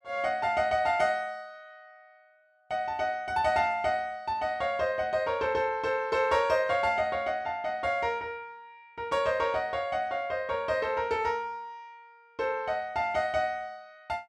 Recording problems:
none

